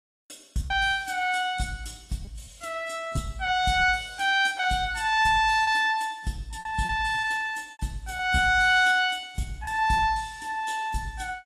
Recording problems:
lossy compression; AAC, log-spectral distance 3 dB, nothing above 12 kHz
lost packets; 7% of the sound replaced, filled with repeated pitch periods

